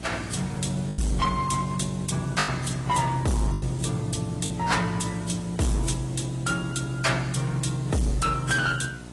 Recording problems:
codec artefacts; AAC, then AAC, log-spectral distance 6 dB, nothing above 10.7 kHz
distortion; hard clipping, signal-to-distortion ratio 8 dB
hum; 60 Hz, harmonics up to 780 Hz, SNR 14 dB
background hiss; slope -4 dB per octave, SNR 19 dB
packet loss; 3% of the sound replaced, filled with the last packet

